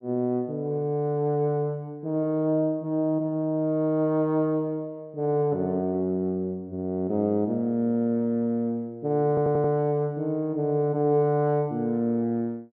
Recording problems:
audio stuttering; at 9.5 s

